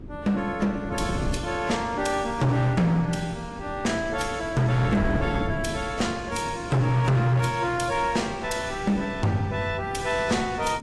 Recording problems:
codec artefacts; AAC, log-spectral distance 3 dB, nothing above 11.3 kHz
distortion; hard clipping, signal-to-distortion ratio 12 dB
wind noise; below 270 Hz, SNR 10 dB

